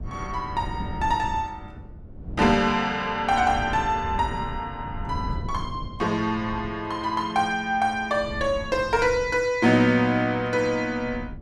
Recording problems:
wind noise; below 160 Hz, SNR 13 dB

